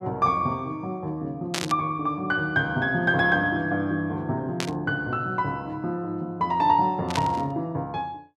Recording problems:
burst of static; at 1.5 s, at 4.5 s and at 7 s; peak +2 dB vs average level

